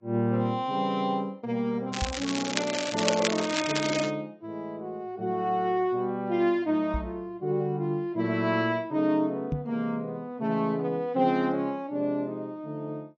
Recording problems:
lossy codec; AAC, log-spectral distance 2 dB
crackling; from 2 to 4 s; loose cable, SNR 3 dB
microphone thump; at 2 s, at 7 s and at 9.5 s; peak +2 dB vs average level

